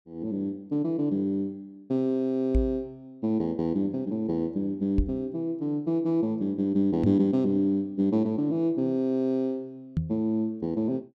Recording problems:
microphone bump; 4 times, first at 2.5 s; peak +5 dB vs average level

